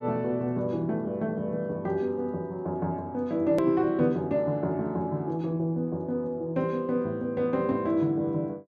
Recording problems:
edit click; at 3.5 s

